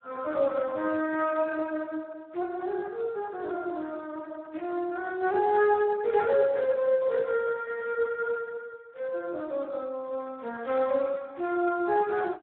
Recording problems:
phone line; 280 Hz to 4 kHz, Speex

